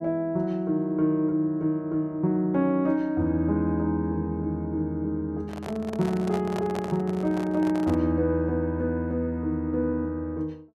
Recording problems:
microphone handling noise; from 5.5 to 8 s; peak -5 dB vs average level

